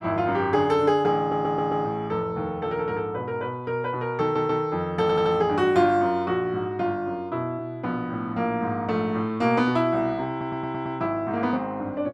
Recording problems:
audio stuttering; 4 times, first at 1 s

